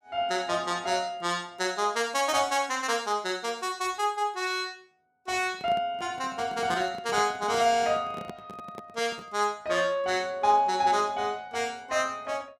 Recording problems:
microphone handling noise; from 5.5 to 9.5 s; peak -7 dB vs average level

